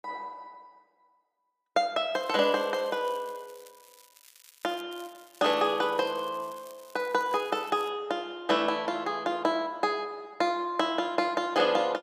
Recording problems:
crackling; from 2 to 5 s and from 5 to 8 s; loose cable, SNR 25 dB

